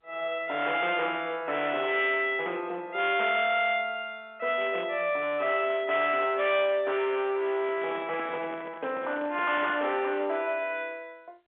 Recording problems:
phone line; 320 Hz to 3.6 kHz, G.711
distortion; hard clipping, uneven, signal-to-distortion ratio 11 dB
microphone handling noise; from 7.5 to 10 s; peak -8 dB vs average level

